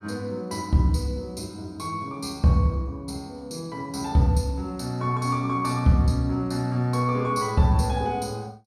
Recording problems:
none

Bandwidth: 14.5 kHz